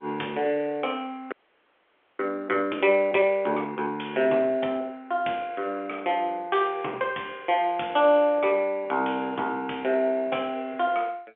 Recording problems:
telephone audio; 300 Hz to 3.4 kHz, G.711
frozen audio; at 1.5 s for 1 s

